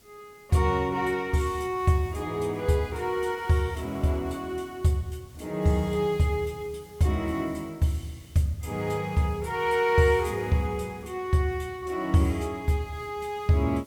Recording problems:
background hiss; SNR 26 dB

